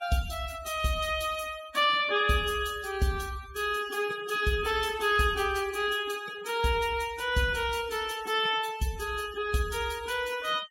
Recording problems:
denoising artefacts; signal-to-artefact ratio 17 dB

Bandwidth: 16 kHz